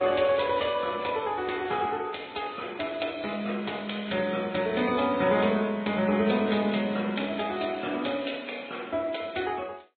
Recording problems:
treble missing; nothing above 3.9 kHz
codec artefacts; MP3, log-spectral distance 8 dB

